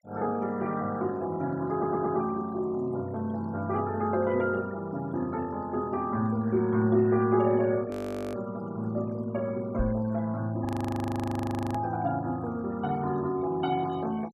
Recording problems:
denoising artefacts; signal-to-artefact ratio 23 dB
audio stuttering; at 1.5 s
audio freezing; at 8 s and at 11 s for 1 s
microphone thump; at 10 s; peak +1 dB vs average level

